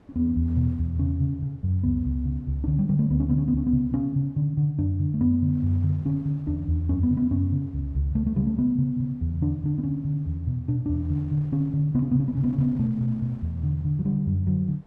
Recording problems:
wind noise; below 500 Hz, SNR 28 dB

